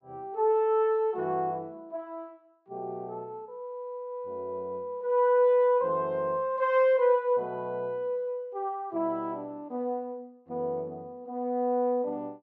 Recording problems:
treble missing; nothing above 7.6 kHz

